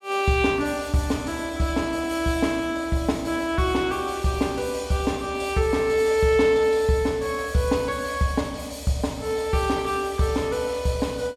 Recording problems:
none

